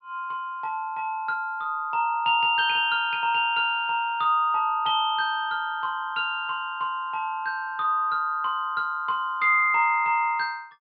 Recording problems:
treble cut off; nothing above 5 kHz

